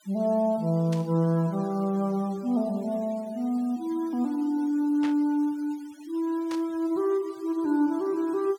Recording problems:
denoising artefacts; signal-to-artefact ratio 27 dB
burst of static; at 1 s, at 5 s and at 6.5 s; peak -8 dB vs average level

